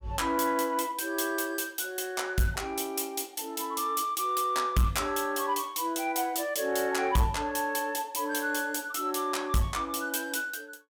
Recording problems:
distorted audio; soft clipping, signal-to-distortion ratio 11 dB

